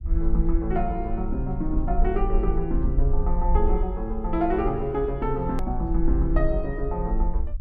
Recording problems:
low-frequency rumble; below 50 Hz, strongest tone 22 Hz, SNR 1 dB
click at an edit; at 5.5 s

